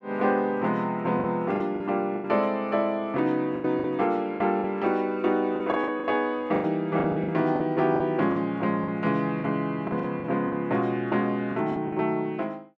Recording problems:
lost packets; 10% of the sound replaced, filled with the last packet

